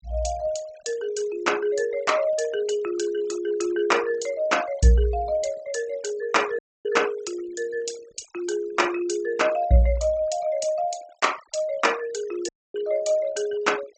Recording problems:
low-pass filter; nothing above 8 kHz
noise reduction artefacts; signal-to-artefact ratio 19 dB
audio cutting out; at 6.5 s and at 12 s

